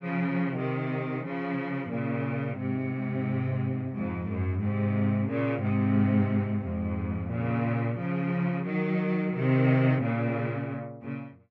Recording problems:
none

